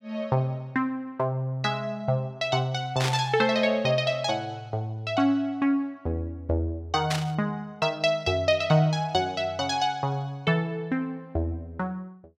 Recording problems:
static burst; at 3 s and at 7 s; peak +2 dB vs average level

